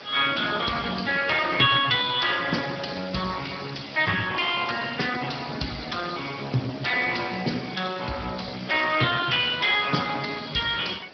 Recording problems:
treble cut off; nothing above 5.3 kHz
codec artefacts; Speex, log-spectral distance 12 dB
hiss; slope -3 dB per octave, SNR 19 dB

